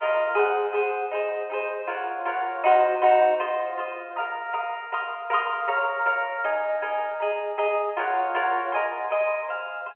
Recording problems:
phone line; 340 Hz to 3.1 kHz, G.711

